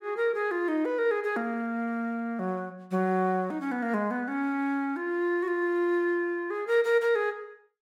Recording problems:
none

